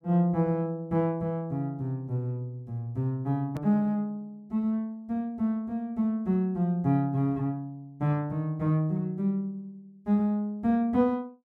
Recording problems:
edit click; at 3.5 s

